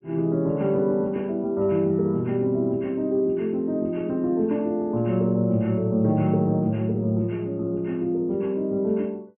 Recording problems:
treble missing; nothing above 3.2 kHz

